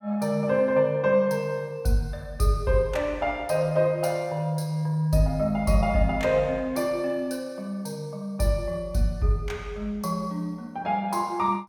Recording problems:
none

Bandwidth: 17.5 kHz